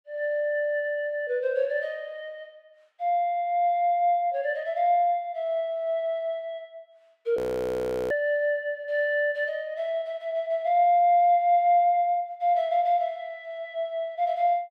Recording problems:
frozen audio; at 7.5 s for 0.5 s

